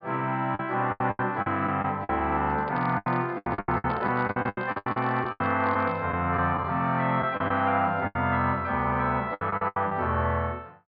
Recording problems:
treble cut off; nothing above 4.9 kHz
lost packets; 14% of the sound replaced, filled with the last packet
microphone handling noise; from 2.5 to 6 s; peak -7 dB vs average level

